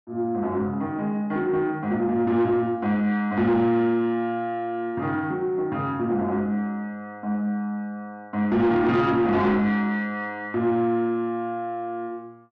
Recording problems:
distortion; soft clipping, signal-to-distortion ratio 12 dB

